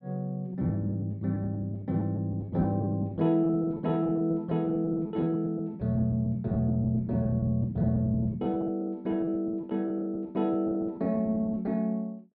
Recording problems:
lost packets; 14% of the sound replaced, filled with repeated pitch periods

